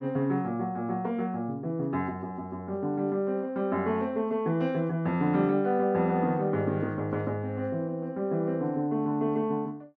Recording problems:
none

